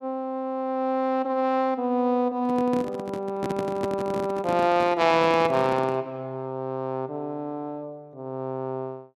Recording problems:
microphone handling noise; from 2.5 to 6 s; peak -1 dB vs average level

